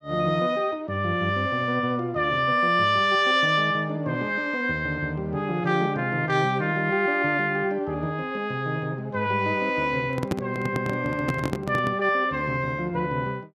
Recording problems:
handling noise; from 10 to 12 s; peak +1 dB vs average level

